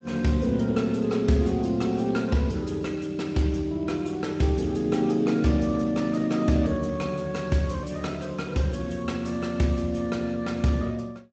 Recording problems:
lossy compression; Speex, log-spectral distance 4 dB, nothing above 7.3 kHz

